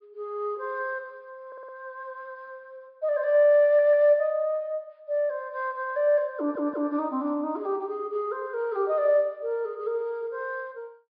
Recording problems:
low-pass filter; nothing above 5.1 kHz
audio stuttering; at 1.5 s, at 3.5 s and at 6.5 s

